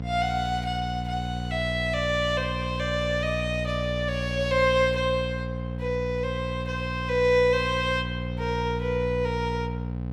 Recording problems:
hum; 60 Hz, harmonics up to 780 Hz, SNR 5 dB

